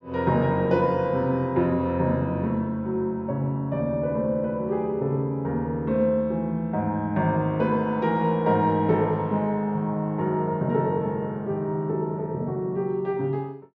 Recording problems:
low-pass filter; nothing above 8 kHz

